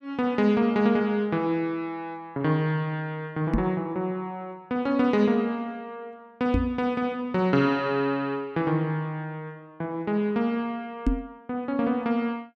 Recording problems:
knock on the microphone; at 3.5 s, at 6.5 s and at 11 s; peak +6 dB vs average level

